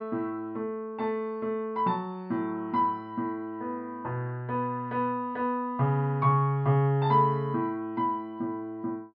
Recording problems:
treble cut off; nothing above 5.5 kHz

